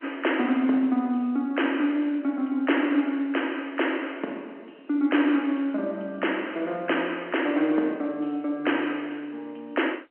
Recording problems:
telephone audio; 220 Hz to 3.1 kHz, G.711

